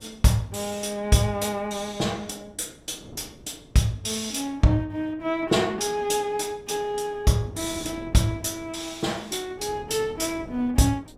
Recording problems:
wind on the microphone; below 390 Hz, SNR 21 dB

